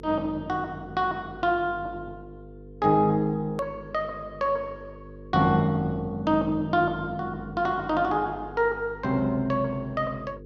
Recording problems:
hum; 50 Hz, harmonics up to 500 Hz, SNR 18 dB
click at an edit; at 3.5 s

